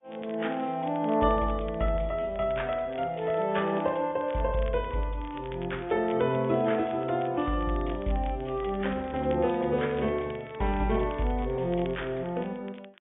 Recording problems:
treble cut off; nothing above 3.6 kHz
codec artefacts; AAC, log-spectral distance 2 dB
crackle; vinyl, SNR 24 dB

